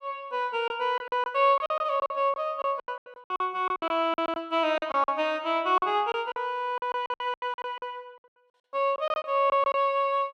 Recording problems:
packet loss; 14% of the sound replaced, filled with silence

